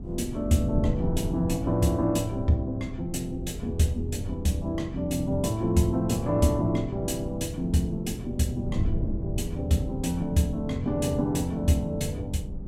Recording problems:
hum; 50 Hz, harmonics up to 900 Hz, SNR 21 dB
wind on the microphone; below 160 Hz, SNR 8 dB

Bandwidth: 16 kHz